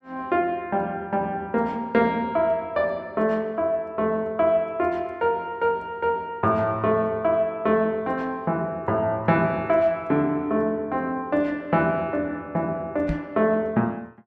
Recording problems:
microphone thump; at 13 s; peak 0 dB vs average level

